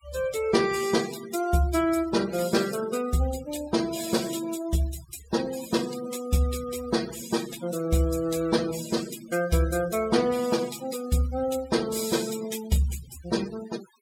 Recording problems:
noise reduction artefacts; signal-to-artefact ratio 14 dB

